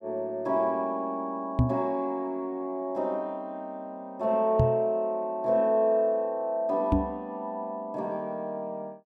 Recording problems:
microphone thump; at 1.5 s, at 4.5 s and at 7 s; peak +9 dB vs average level

